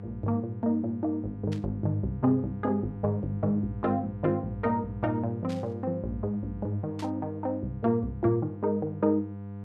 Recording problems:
hum; 50 Hz, harmonics up to 1.2 kHz, SNR 10 dB
burst of static; at 1.5 s, at 5.5 s and at 7 s; peak -10 dB vs average level

